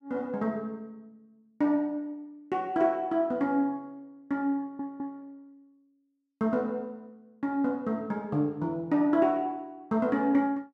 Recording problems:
audio stuttering; at 4.5 s

